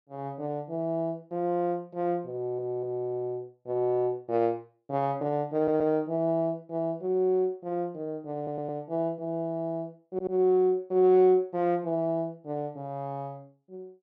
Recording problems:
stutter; 4 times, first at 2.5 s

